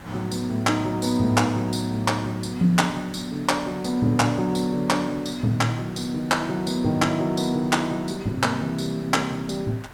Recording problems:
background hiss; SNR 19 dB

